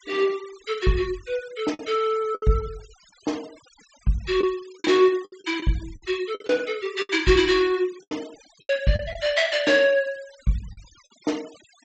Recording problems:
treble cut off; nothing above 8 kHz
denoising artefacts; signal-to-artefact ratio 20 dB
lost packets; 7% of the sound replaced, filled with the last packet

